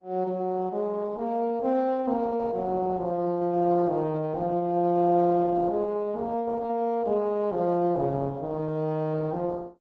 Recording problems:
lossy codec; Opus, log-spectral distance 2 dB

